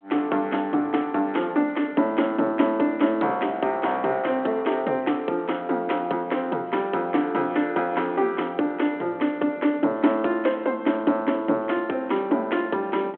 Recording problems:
phone line; 240 Hz to 3.3 kHz, G.726

